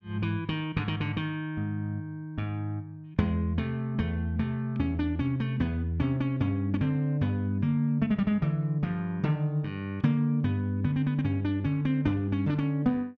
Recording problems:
none

